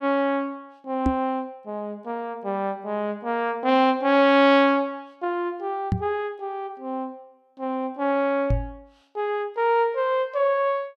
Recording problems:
microphone thump; at 1 s, at 6 s and at 8.5 s; peak +4 dB vs average level

